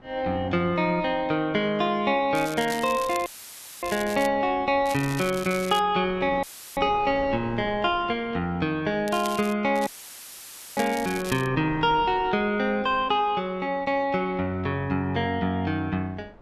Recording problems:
wind on the microphone; below 690 Hz, SNR 21 dB
crackling; 4 times, first at 2.5 s; loose cable, SNR 15 dB
audio cutting out; at 3.5 s for 0.5 s, at 6.5 s and at 10 s for 1 s; filled with static

